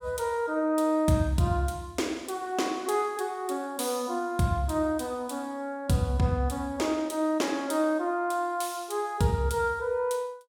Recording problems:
none

